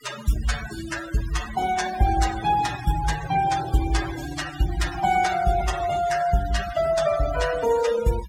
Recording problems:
denoising artefacts; signal-to-artefact ratio 11 dB

